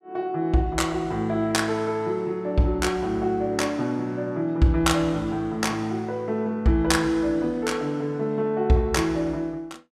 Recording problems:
none

